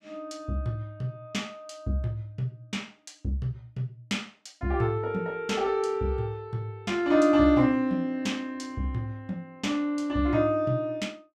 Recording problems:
none

